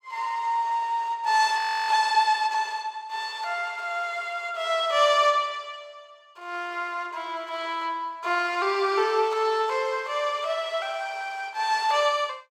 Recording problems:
frozen audio; at 1.5 s

